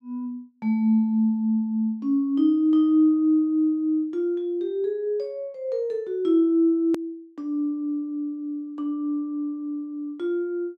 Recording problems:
hard cut with a click; at 7 s

